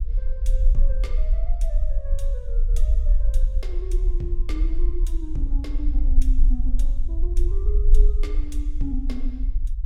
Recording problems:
low-frequency rumble; below 42 Hz, strongest tone 22 Hz, SNR -12 dB

